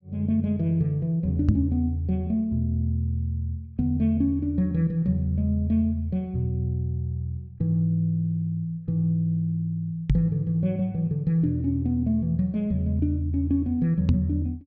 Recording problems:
treble missing; nothing above 8 kHz
microphone thump; at 1.5 s, at 10 s and at 14 s; peak +7 dB vs average level

